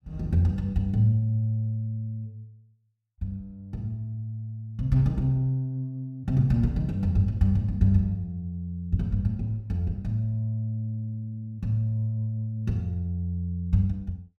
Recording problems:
none

